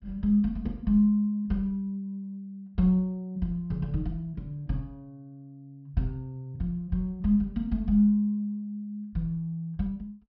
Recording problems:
low-pass filter; nothing above 5.5 kHz

